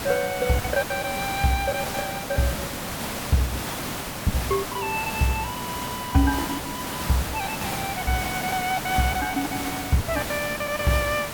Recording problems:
background hiss; slope -3 dB per octave, SNR 4 dB
packet loss; 13% of the sound replaced, filled with the last packet

